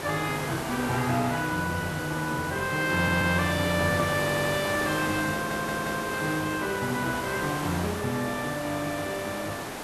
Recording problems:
background hiss; slope -5 dB per octave, SNR 5 dB
stutter; at 3 s, at 4 s and at 5.5 s

